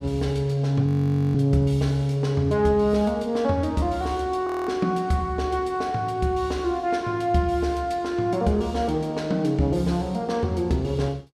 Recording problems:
frozen audio; at 1 s and at 4.5 s

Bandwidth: 14.5 kHz